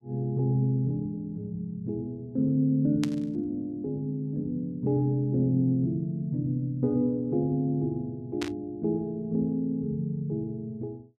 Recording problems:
burst of static; at 3 s and at 8.5 s; peak -3 dB vs average level

